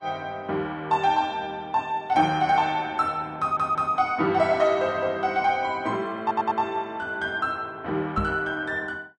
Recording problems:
lossy compression; Vorbis, log-spectral distance 2 dB, nothing above 10.1 kHz
stutter; at 3.5 s and at 6 s
microphone bump; at 8 s; peak -1 dB vs average level

